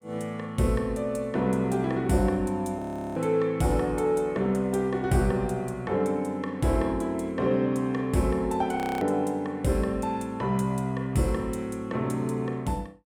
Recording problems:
frozen audio; at 3 s and at 9 s

